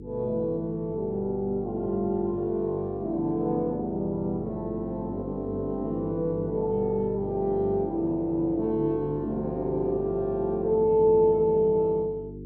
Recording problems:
hum; 50 Hz, harmonics up to 450 Hz, SNR 13 dB

